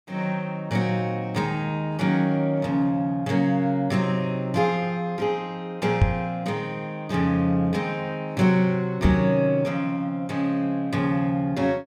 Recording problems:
microphone bump; at 6 s and at 9 s; peak +8 dB vs average level

